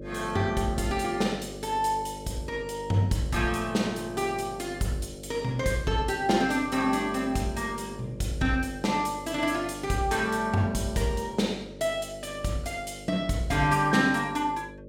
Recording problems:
hum; 50 Hz, harmonics up to 600 Hz, SNR 15 dB

